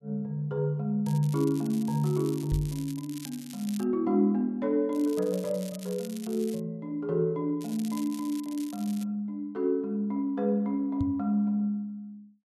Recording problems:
crackle; from 1 to 4 s, from 5 to 6.5 s and from 7.5 to 9 s; loose cable, SNR 18 dB
microphone thump; at 2.5 s and at 11 s; peak +2 dB vs average level

